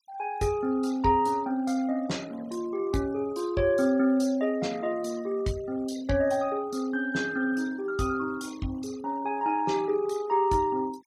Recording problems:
denoising artefacts; signal-to-artefact ratio 22 dB

